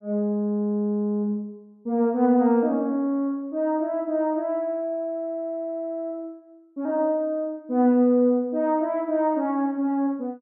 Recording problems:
none

